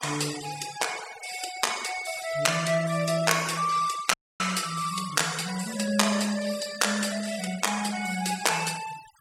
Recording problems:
noise reduction artefacts; signal-to-artefact ratio 13 dB
dropout; at 4 s

